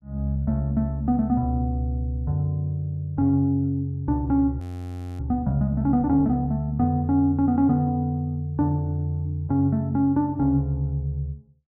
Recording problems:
audio freezing; at 4.5 s for 0.5 s

